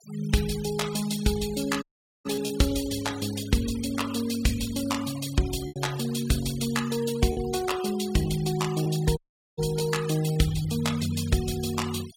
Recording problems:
noise reduction artefacts; signal-to-artefact ratio 14 dB
lost packets; 2% of the sound replaced, filled with repeated pitch periods
dropout; at 2 s and at 9 s

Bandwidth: 16.5 kHz